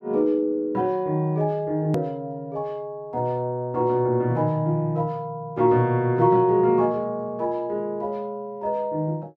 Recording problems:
click at an edit; at 2 s

